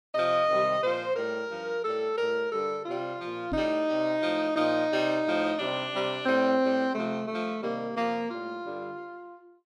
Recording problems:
knock on the microphone; at 3.5 s; peak -2 dB vs average level

